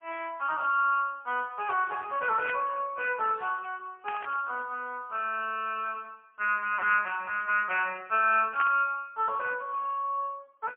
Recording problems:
phone line; 300 Hz to 3.1 kHz, AMR-NB, then MP3
static burst; at 2.5 s, at 4 s and at 8.5 s; peak -5 dB vs average level

